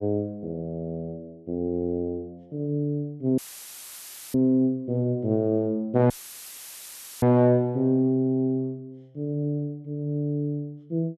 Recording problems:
audio cutting out; at 3.5 s for 1 s and at 6 s for 1 s; filled with static

